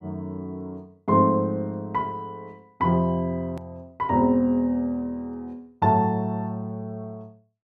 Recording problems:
click at an edit; at 3.5 s

